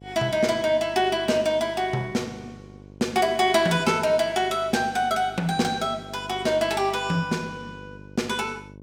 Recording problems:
hum; 50 Hz, harmonics up to 900 Hz, SNR 21 dB

